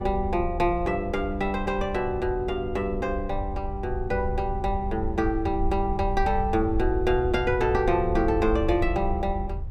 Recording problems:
rumble; below 82 Hz, SNR 7 dB

